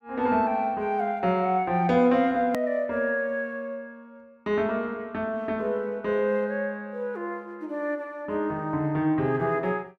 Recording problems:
click at an edit; at 2.5 s

